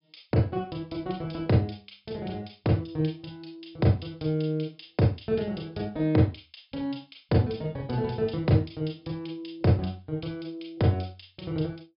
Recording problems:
low-pass filter; nothing above 5.1 kHz

